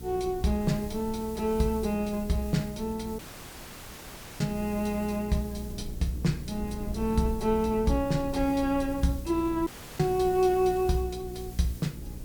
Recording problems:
hum; 60 Hz, harmonics up to 540 Hz, SNR 13 dB
hiss; slope +3 dB per octave, SNR 19 dB
rumble; below 110 Hz, SNR 16 dB
audio cutting out; at 3 s for 1 s and at 9.5 s

